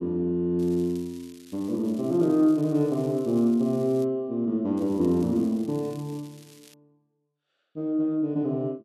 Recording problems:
crackling; from 0.5 to 4 s and from 5 to 6.5 s; loose cable, SNR 27 dB

